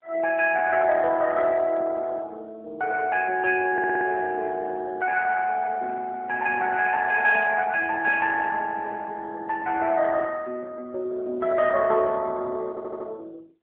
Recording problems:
phone line; 260 Hz to 3.3 kHz, AMR-NB
audio stuttering; at 3.5 s and at 13 s

